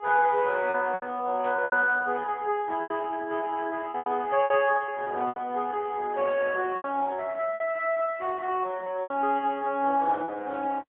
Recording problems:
phone line; 280 Hz to 3.4 kHz, AMR-NB, then MP3
packet loss; 8% of the sound replaced, filled with repeated pitch periods
static burst; at 1.5 s and at 4.5 s; peak -15 dB vs average level

